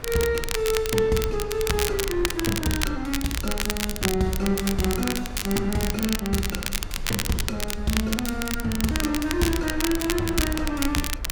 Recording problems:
rumble; below 56 Hz, strongest tone 20 Hz, SNR 12 dB
wind noise; below 1.3 kHz, SNR 16 dB
crackle; vinyl, SNR 3 dB

